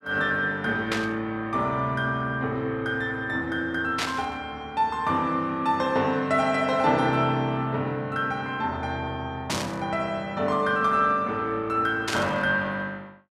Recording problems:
static burst; 4 times, first at 1 s; peak +2 dB vs average level

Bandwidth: 14 kHz